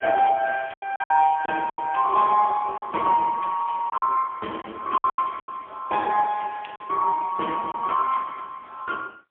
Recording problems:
telephone audio; 260 Hz to 2.9 kHz, AMR-NB, then MP3
lost packets; 7% of the sound replaced, filled with silence

